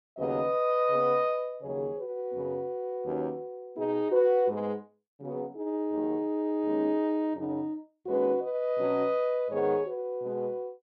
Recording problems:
none

